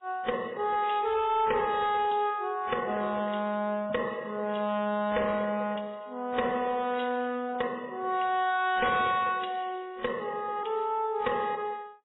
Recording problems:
lossy codec; MP3, then AAC, log-spectral distance 3 dB, nothing above 3.5 kHz
distorted audio; hard clipping, uneven, signal-to-distortion ratio 11 dB

